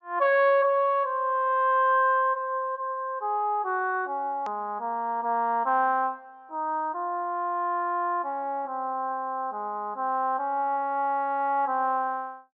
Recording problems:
treble cut off; nothing above 8 kHz
hard cut with a click; at 4.5 s

